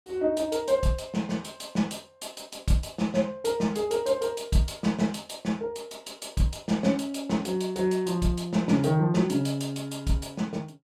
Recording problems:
none

